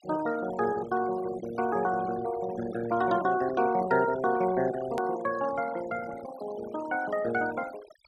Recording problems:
noise reduction artefacts; signal-to-artefact ratio 15 dB
hard cut with a click; at 5 s

